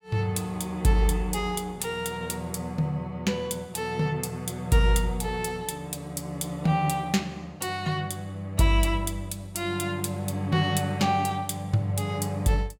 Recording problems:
none

